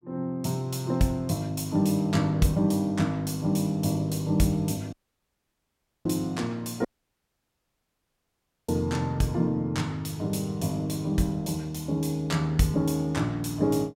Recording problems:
dropout; at 5 s for 1 s and at 7 s for 2 s

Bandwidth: 16.5 kHz